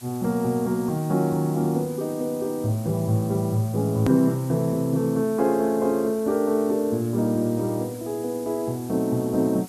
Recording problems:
hiss; slope 0 dB per octave, SNR 20 dB
hard cut with a click; at 4 s

